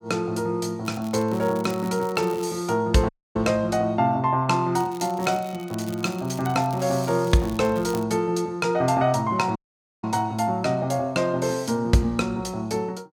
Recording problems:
crackle; from 1 to 2.5 s and from 5 to 8 s; loose cable, SNR 20 dB
dropout; at 3 s and at 9.5 s

